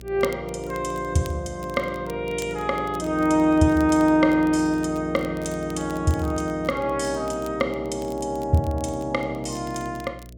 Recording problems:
mains hum; 60 Hz, harmonics up to 660 Hz, SNR 19 dB
crackle; vinyl, SNR 25 dB

